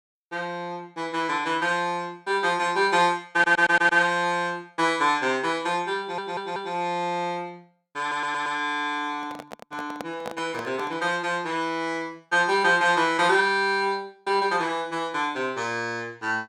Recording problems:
stutter; at 3.5 s, at 6 s and at 8 s
microphone handling noise; from 9 to 11 s; peak -6 dB vs average level

